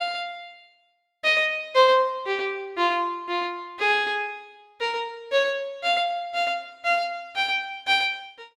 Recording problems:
none

